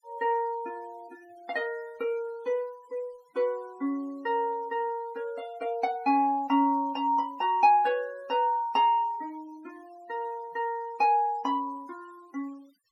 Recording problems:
denoising artefacts; signal-to-artefact ratio 27 dB

